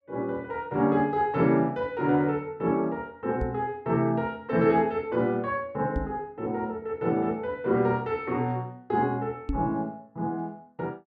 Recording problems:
knock on the microphone; at 3.5 s, at 6 s and at 9.5 s; peak +1 dB vs average level

